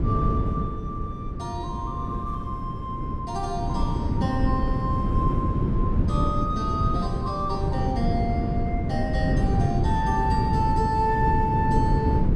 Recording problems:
wind noise; below 210 Hz, SNR -2 dB

